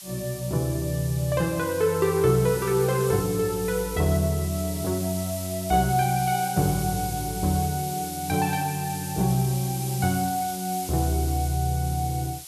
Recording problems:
hiss; SNR 10 dB

